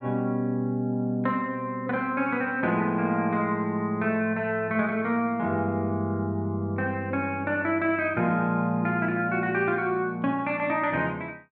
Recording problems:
none

